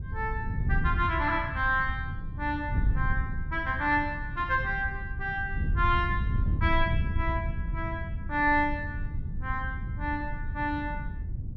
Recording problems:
wind on the microphone; below 110 Hz, SNR 3 dB

